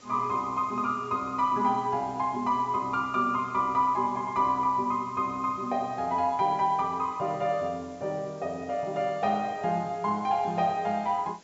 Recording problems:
low-pass filter; nothing above 8 kHz
hiss; slope -2 dB per octave, SNR 27 dB

